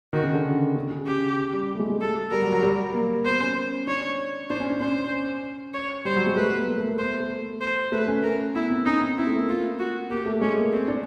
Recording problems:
none

